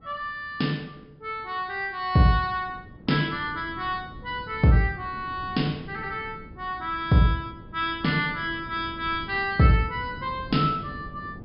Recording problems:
treble missing; nothing above 5.5 kHz
wind on the microphone; below 260 Hz, SNR 17 dB

